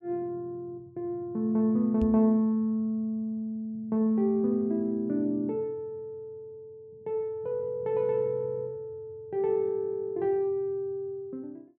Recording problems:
microphone thump; at 2 s; peak -2 dB vs average level

